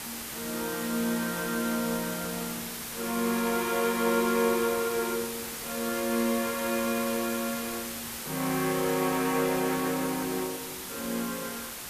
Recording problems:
hiss; slope -1 dB per octave, SNR 6 dB

